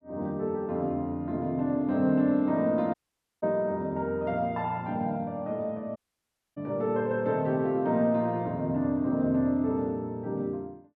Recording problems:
audio cutting out; at 3 s and at 6 s for 0.5 s

